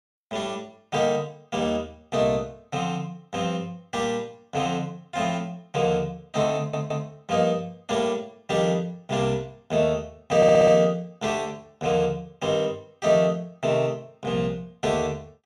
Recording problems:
stutter; at 6.5 s and at 10 s

